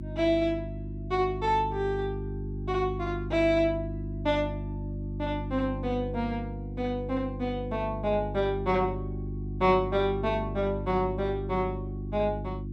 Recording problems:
hum; 50 Hz, harmonics up to 350 Hz, SNR 7 dB

